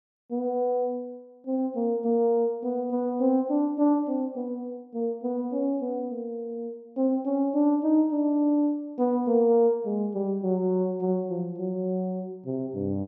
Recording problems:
none

